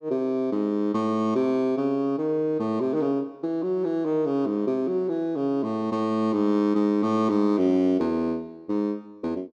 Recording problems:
none

